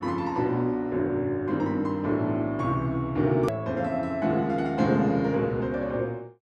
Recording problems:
edit click; at 3.5 s

